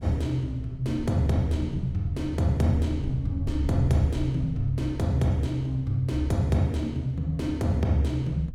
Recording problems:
low-frequency rumble; below 96 Hz, SNR 13 dB

